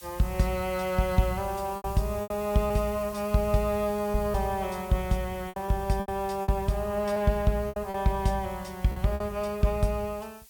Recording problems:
hiss; SNR 19 dB
lost packets; 7% of the sound replaced, filled with repeated pitch periods

